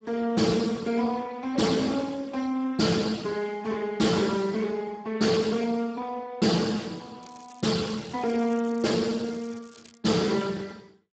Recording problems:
lossy compression; Speex, log-spectral distance 6 dB, nothing above 7.6 kHz
distorted audio; soft clipping, signal-to-distortion ratio 11 dB
crackling; from 7 to 10 s; loose cable, SNR 25 dB

